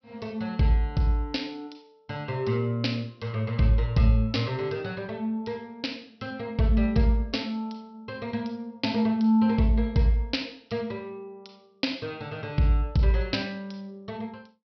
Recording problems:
treble missing; nothing above 5.5 kHz

